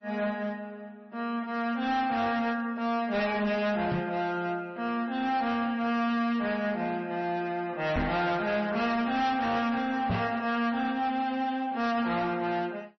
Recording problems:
codec artefacts; MP3, log-spectral distance 2 dB, nothing above 5.8 kHz
distortion; hard clipping, signal-to-distortion ratio 11 dB
microphone thump; at 4 s, at 8 s and at 10 s; peak +3 dB vs average level

